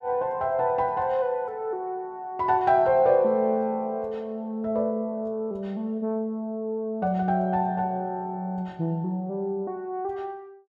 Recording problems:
none

